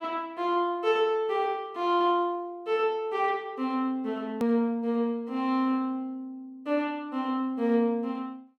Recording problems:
edit click; at 4.5 s

